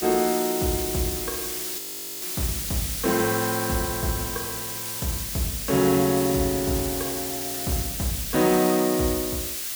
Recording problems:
hiss; SNR 3 dB
audio freezing; at 2 s

